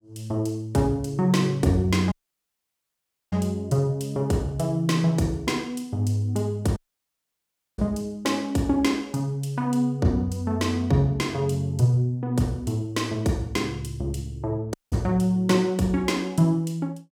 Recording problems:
dropout; at 2 s for 1 s, at 7 s for 1 s and at 15 s

